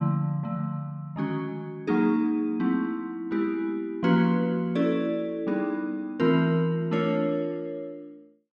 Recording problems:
none

